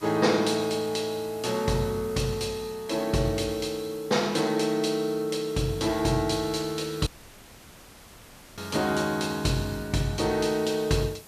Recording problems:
hiss; slope -3 dB per octave, SNR 21 dB
dropout; at 7 s for 1.5 s

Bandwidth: 14.5 kHz